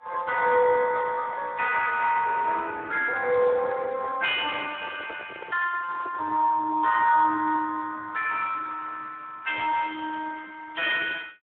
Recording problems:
telephone audio; 340 Hz to 3.6 kHz, Speex
handling noise; from 4 to 6.5 s; peak -11 dB vs average level

